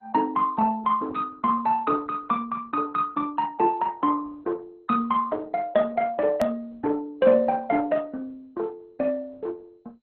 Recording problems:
codec artefacts; Opus, then MP2, log-spectral distance 3 dB, nothing above 15.1 kHz
edit click; at 6.5 s

